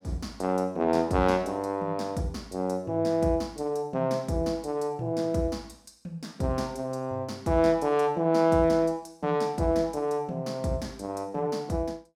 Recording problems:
none

